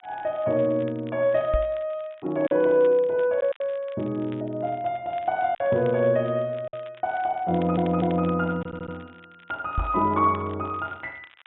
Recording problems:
low-pass filter; nothing above 3.7 kHz
crackle; vinyl, SNR 27 dB
packet loss; 2% of the sound replaced, filled with silence
microphone thump; at 1.5 s and at 10 s; peak +1 dB vs average level
audio stuttering; at 7.5 s and at 8.5 s

